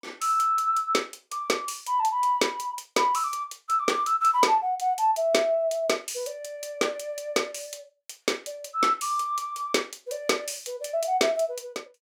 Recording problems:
none

